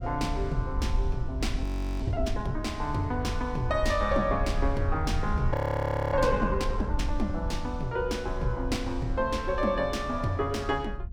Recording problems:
wind noise; below 72 Hz, SNR 5 dB
frozen audio; at 1.5 s and at 5.5 s for 0.5 s

